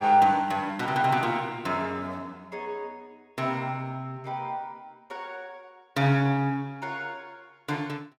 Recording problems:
none

